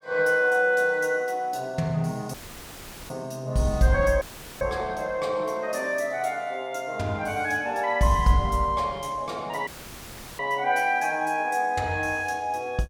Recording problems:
dropout; at 2.5 s for 1 s, at 4 s and at 9.5 s for 0.5 s; filled with static

